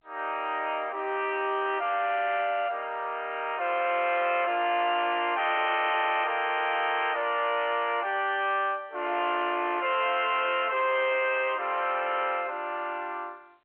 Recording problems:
phone line; 300 Hz to 3.4 kHz, G.711
distorted audio; soft clipping, signal-to-distortion ratio 9 dB

